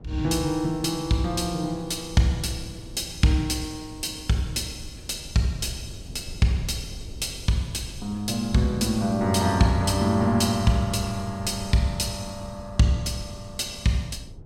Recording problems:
low-frequency rumble; below 150 Hz, SNR 18 dB

